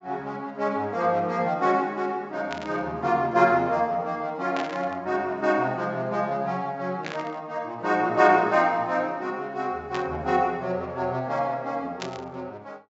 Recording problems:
low-pass filter; nothing above 7.6 kHz
static burst; 5 times, first at 2.5 s; peak -4 dB vs average level

